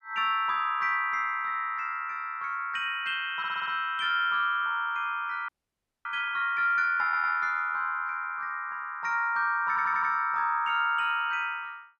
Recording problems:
audio stuttering; at 3.5 s, at 7 s and at 9.5 s
frozen audio; at 5.5 s for 0.5 s

